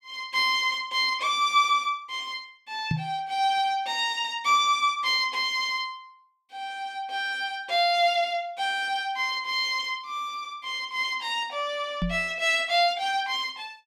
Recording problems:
microphone thump; at 3 s and at 12 s; peak +1 dB vs average level

